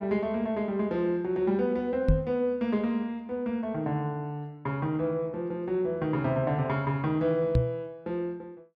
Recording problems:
microphone thump; at 2 s and at 7.5 s; peak +9 dB vs average level

